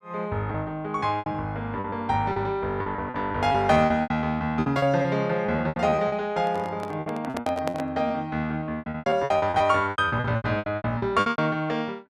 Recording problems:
lost packets; 17% of the sound replaced, filled with repeated pitch periods
microphone handling noise; from 6.5 to 8 s; peak -1 dB vs average level

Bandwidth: 13.5 kHz